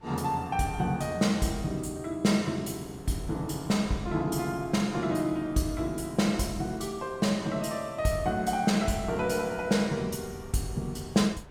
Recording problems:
wind on the microphone; below 550 Hz, SNR 22 dB

